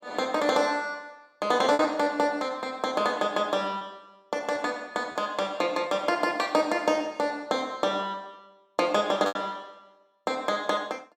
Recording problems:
packet loss; 3% of the sound replaced, filled with repeated pitch periods

